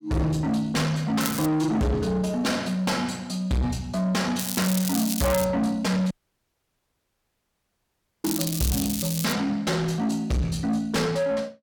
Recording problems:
distortion; soft clipping, signal-to-distortion ratio 6 dB
crackle; at 1 s, from 4.5 to 5.5 s and from 8 to 9.5 s; loose cable, SNR 5 dB
audio cutting out; at 6 s for 2 s

